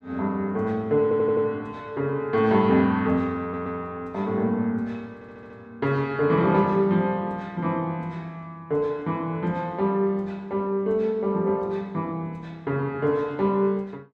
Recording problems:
stutter; at 1 s, at 3.5 s and at 5 s

